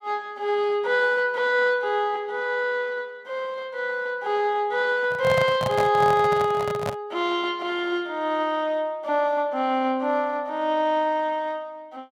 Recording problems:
handling noise; from 5 to 7 s; peak 0 dB vs average level

